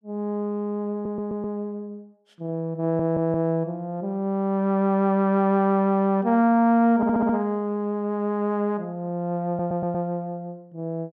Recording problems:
audio stuttering; 4 times, first at 1 s

